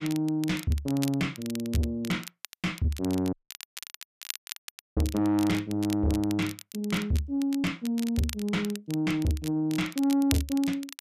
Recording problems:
distorted audio; soft clipping, signal-to-distortion ratio 6 dB
crackling; vinyl, SNR 13 dB
dropout; at 3.5 s for 1.5 s

